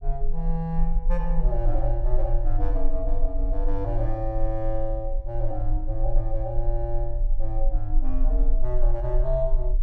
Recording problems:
low-frequency rumble; below 36 Hz, strongest tone 20 Hz, SNR -3 dB

